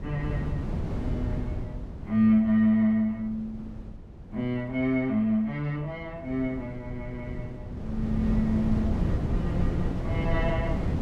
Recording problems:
wind on the microphone; below 210 Hz, SNR 4 dB

